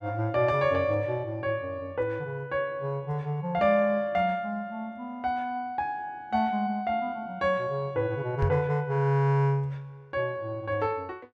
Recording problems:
microphone bump; at 8.5 s; peak +3 dB vs average level

